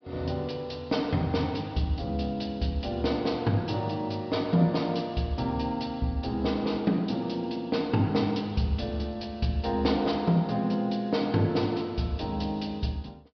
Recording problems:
low-pass filter; nothing above 5.5 kHz

